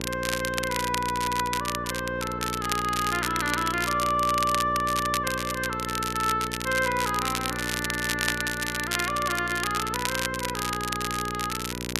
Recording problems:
electrical hum; 60 Hz, harmonics up to 1.1 kHz, SNR 8 dB
crackling; vinyl, SNR 4 dB

